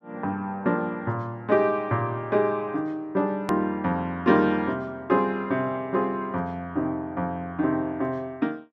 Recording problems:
hard cut with a click; at 3.5 s

